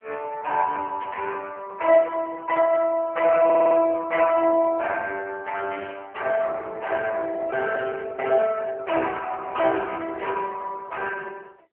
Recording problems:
phone line; 260 Hz to 3.1 kHz, AMR-NB
static burst; 4 times, first at 1 s; peak -12 dB vs average level
audio stuttering; at 3.5 s

